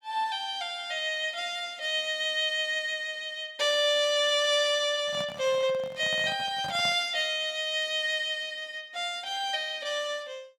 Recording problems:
handling noise; from 5 to 7 s; peak -8 dB vs average level

